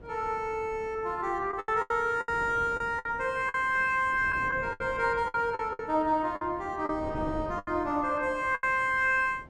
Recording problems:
wind noise; below 470 Hz, SNR 17 dB
packet loss; 9% of the sound replaced, filled with the last packet

